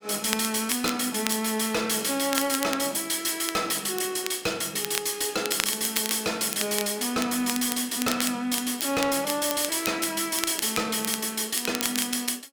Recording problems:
distorted audio; hard clipping, uneven, signal-to-distortion ratio 12 dB
crackle; vinyl, SNR 8 dB

